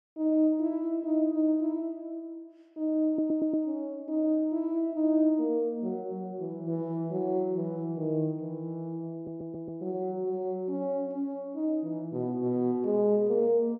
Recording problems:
stutter; at 3 s and at 9 s

